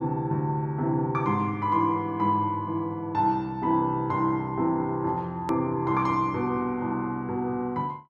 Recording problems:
click at an edit; at 5.5 s

